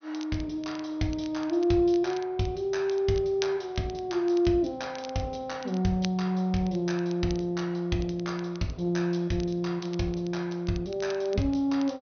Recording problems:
treble missing; nothing above 6.3 kHz
crackle; vinyl, SNR 20 dB

